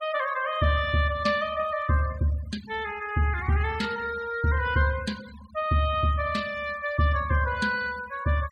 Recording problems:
denoising artefacts; signal-to-artefact ratio 19 dB

